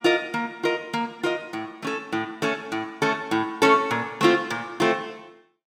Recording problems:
none

